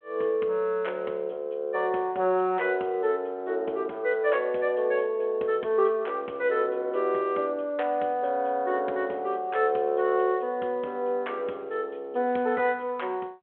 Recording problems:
telephone audio; 240 Hz to 3.4 kHz, G.726

